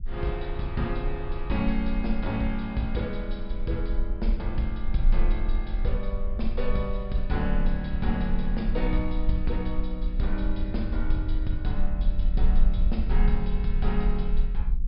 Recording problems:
low-pass filter; nothing above 5.5 kHz
low-frequency rumble; below 42 Hz, strongest tone 24 Hz, SNR 0 dB

